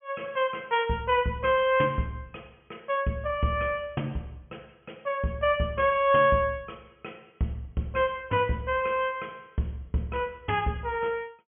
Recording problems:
treble cut off; nothing above 3.3 kHz

